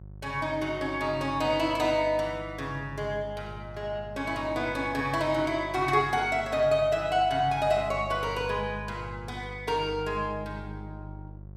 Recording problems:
mains hum; 50 Hz, harmonics up to 550 Hz, SNR 15 dB

